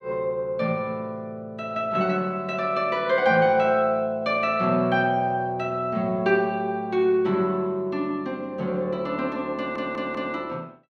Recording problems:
audio stuttering; at 9.5 s

